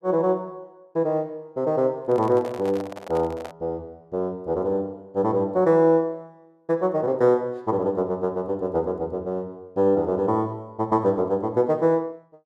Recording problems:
microphone handling noise; from 2 to 3.5 s; peak -9 dB vs average level

